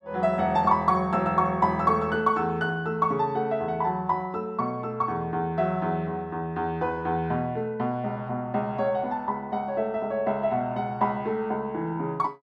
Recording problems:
none

